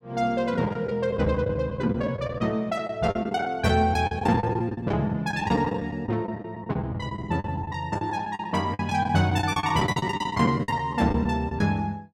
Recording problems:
packet loss; 16% of the sound replaced, filled with the last packet

